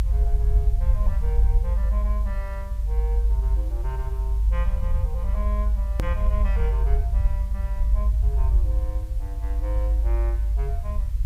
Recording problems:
background hiss; slope -2 dB per octave, SNR 16 dB
low-frequency rumble; below 54 Hz, strongest tone 52 Hz, SNR -14 dB
hard cut with a click; at 6 s

